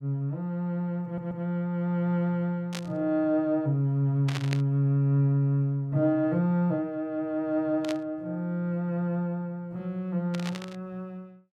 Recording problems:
stutter; at 1 s
static burst; 4 times, first at 2.5 s; peak -3 dB vs average level

